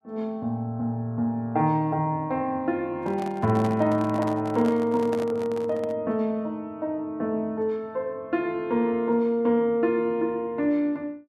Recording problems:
microphone handling noise; from 3 to 6 s; peak -5 dB vs average level

